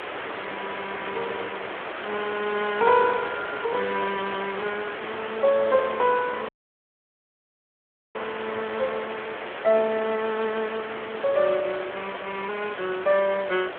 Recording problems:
phone line; 280 Hz to 3.5 kHz, Speex
hiss; SNR 7 dB
dropout; at 6.5 s for 1.5 s

